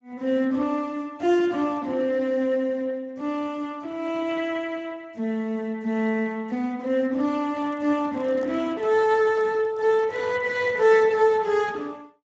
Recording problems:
lossy compression; Speex, log-spectral distance 3 dB
handling noise; from 7.5 to 11 s; peak -14 dB vs average level

